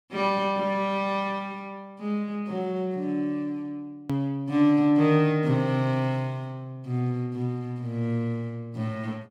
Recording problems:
click at an edit; at 4 s

